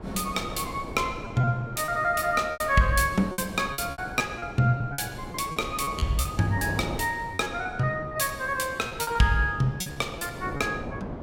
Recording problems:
wind noise; below 550 Hz, SNR 12 dB
lost packets; 10% of the sound replaced, filled with repeated pitch periods

